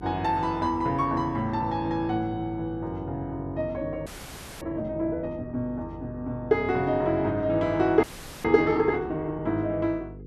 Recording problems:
hum; 50 Hz, harmonics up to 500 Hz, SNR 16 dB
frozen audio; at 4 s for 0.5 s and at 8 s

